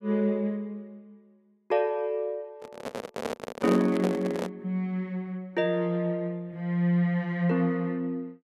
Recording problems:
microphone handling noise; from 2.5 to 4.5 s; peak +1 dB vs average level

